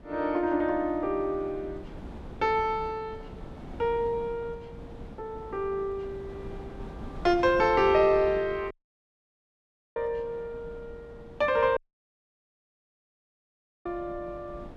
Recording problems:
wind on the microphone; below 370 Hz, SNR 16 dB
dropout; at 8.5 s for 1.5 s and at 12 s for 2 s

